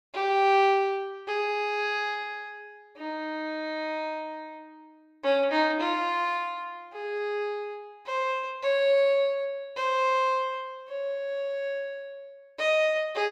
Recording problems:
none

